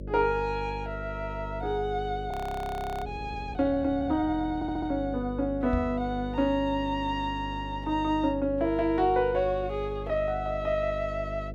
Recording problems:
hum; 50 Hz, harmonics up to 600 Hz, SNR 10 dB
audio freezing; at 2.5 s for 0.5 s
stutter; at 4.5 s
microphone bump; at 5.5 s; peak +1 dB vs average level

